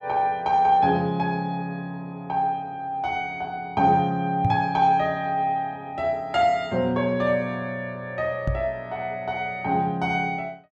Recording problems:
microphone thump; at 4.5 s and at 8.5 s; peak +3 dB vs average level

